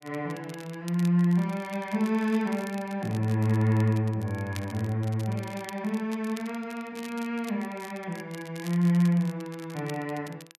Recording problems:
crackling; vinyl, SNR 20 dB

